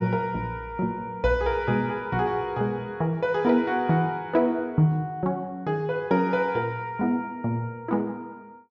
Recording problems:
treble missing; nothing above 7.5 kHz

